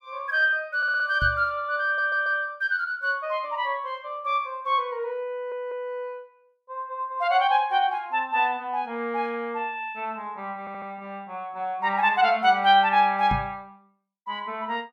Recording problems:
stutter; 4 times, first at 1 s
knock on the microphone; at 1 s and at 13 s; peak -2 dB vs average level

